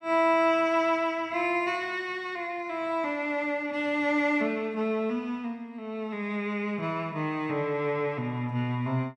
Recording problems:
none

